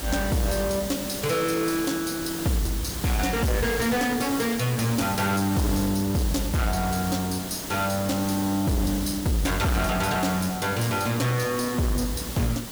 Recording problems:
distortion; soft clipping, signal-to-distortion ratio 6 dB
hiss; SNR 8 dB

